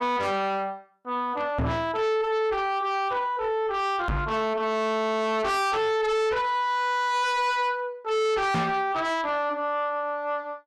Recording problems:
distorted audio; soft clipping, signal-to-distortion ratio 6 dB
microphone thump; at 1.5 s, at 4 s and at 8.5 s; peak +4 dB vs average level

